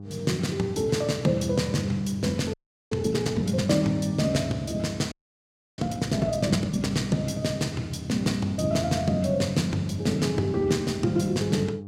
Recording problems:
hum; 50 Hz, harmonics up to 800 Hz, SNR 14 dB
audio freezing; at 2.5 s and at 5 s for 0.5 s

